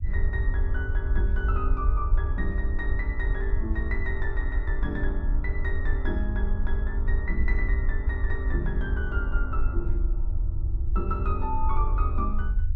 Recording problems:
low-frequency rumble; below 62 Hz, SNR -6 dB

